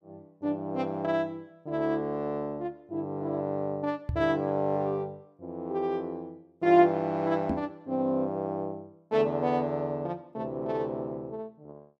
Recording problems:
knock on the microphone; at 4 s and at 7.5 s; peak +2 dB vs average level

